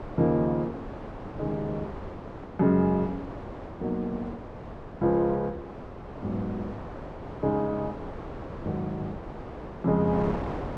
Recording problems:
wind on the microphone; below 770 Hz, SNR 10 dB

